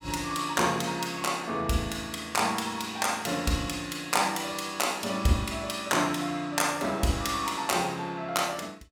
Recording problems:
none

